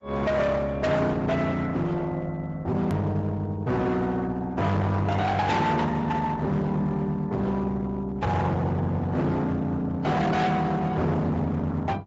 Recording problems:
low-pass filter; nothing above 8 kHz
lossy compression; AAC, then Opus, log-spectral distance 2 dB
distorted audio; hard clipping, uneven, signal-to-distortion ratio 7 dB
hard cut with a click; at 3 s

